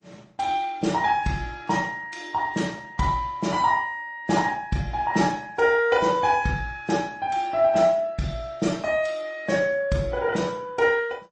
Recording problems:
lossy codec; MP3, then Opus, log-spectral distance 3 dB, nothing above 8 kHz

